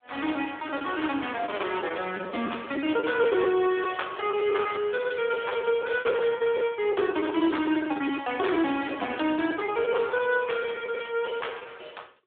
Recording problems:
telephone audio; 280 Hz to 3.6 kHz, AMR-NB
lost packets; 11% of the sound replaced, filled with the last packet

